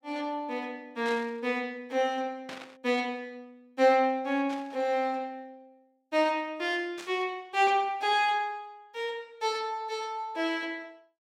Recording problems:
burst of static; 4 times, first at 1 s; peak -8 dB vs average level

